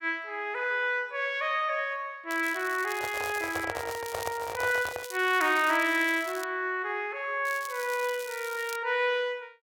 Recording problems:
crackling; from 2.5 to 3.5 s, from 4 to 6.5 s and from 7.5 to 9 s; loose cable, SNR 14 dB
microphone handling noise; from 3 to 5 s; peak -1 dB vs average level

